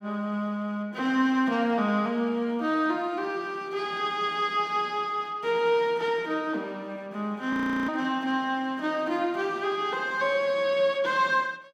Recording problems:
frozen audio; at 7.5 s

